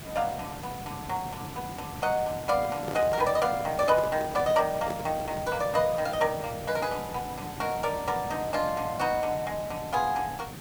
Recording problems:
background hiss; slope -4 dB per octave, SNR 11 dB
handling noise; from 2.5 to 5.5 s; peak -4 dB vs average level

